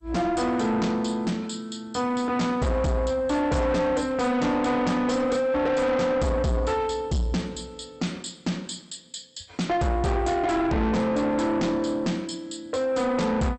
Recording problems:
lossy codec; MP2, log-spectral distance 4 dB, nothing above 8.5 kHz
distortion; soft clipping, signal-to-distortion ratio 8 dB

